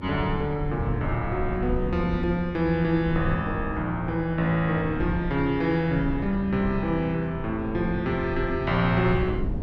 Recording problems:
low-frequency rumble; below 170 Hz, SNR 8 dB

